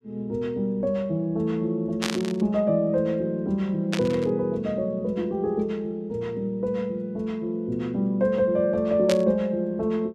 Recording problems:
static burst; at 2 s, at 4 s and at 9 s; peak +1 dB vs average level

